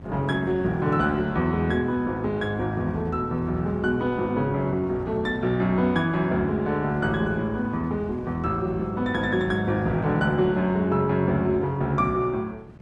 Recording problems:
lossy compression; Opus, log-spectral distance 2 dB
wind noise; below 260 Hz, SNR 19 dB

